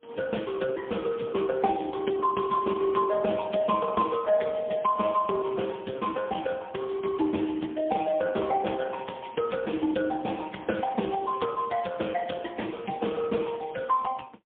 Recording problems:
telephone audio; 190 Hz to 3.4 kHz, AMR-NB, then MP3

